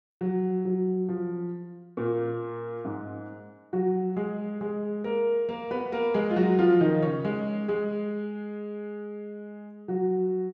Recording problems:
none

